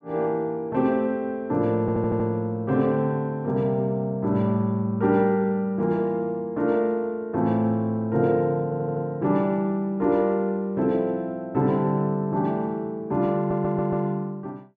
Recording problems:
stutter; at 2 s, at 8.5 s and at 13 s

